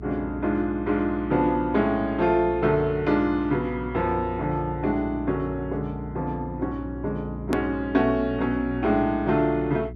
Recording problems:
treble missing; nothing above 8 kHz
hum; 60 Hz, harmonics up to 420 Hz, SNR 13 dB
hard cut with a click; at 7.5 s

